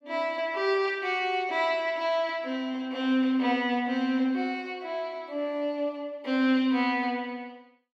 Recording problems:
none

